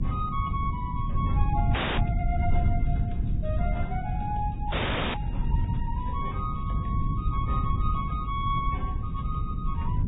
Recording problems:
treble cut off; nothing above 3.4 kHz
codec artefacts; Vorbis, log-spectral distance 2 dB
hum; 50 Hz, harmonics up to 1.1 kHz, SNR 19 dB
rumble; below 120 Hz, SNR -4 dB
frozen audio; at 1.5 s and at 4.5 s

